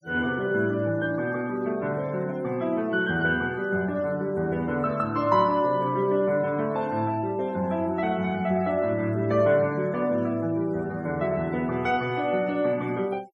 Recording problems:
denoising artefacts; signal-to-artefact ratio 26 dB

